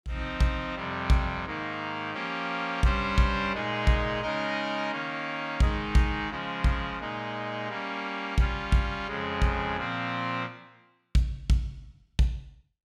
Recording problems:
none

